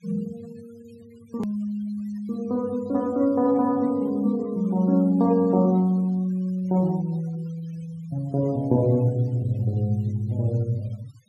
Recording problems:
noise reduction artefacts; signal-to-artefact ratio 26 dB
edit click; at 1.5 s

